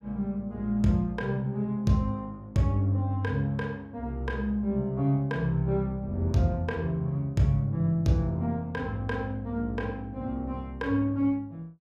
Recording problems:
none

